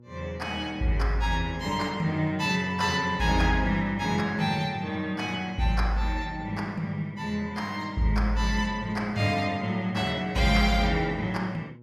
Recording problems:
hum; 60 Hz, harmonics up to 960 Hz, SNR 23 dB

